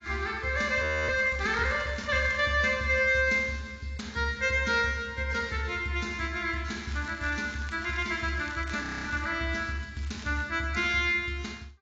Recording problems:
codec artefacts; AAC, log-spectral distance 4 dB
audio freezing; at 1 s and at 9 s
crackling; from 1 to 2.5 s, from 7 to 9.5 s and at 10 s; loose cable, SNR 20 dB

